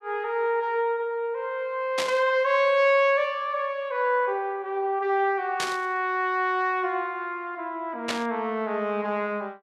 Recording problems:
burst of static; at 2 s, at 5.5 s and at 8 s; peak +1 dB vs average level

